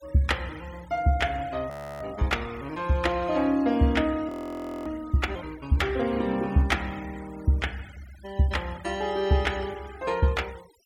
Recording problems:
denoising artefacts; signal-to-artefact ratio 22 dB
audio freezing; at 1.5 s and at 4.5 s for 0.5 s

